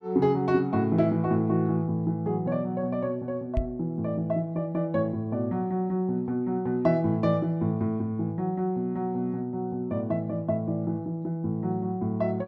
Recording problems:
knock on the microphone; at 3.5 s; peak +3 dB vs average level

